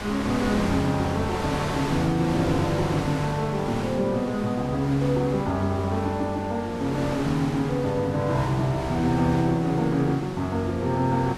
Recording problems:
wind noise; below 1.9 kHz, SNR 10 dB

